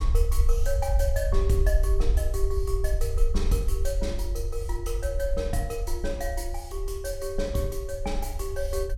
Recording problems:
low-frequency rumble; below 58 Hz, SNR -3 dB

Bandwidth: 16.5 kHz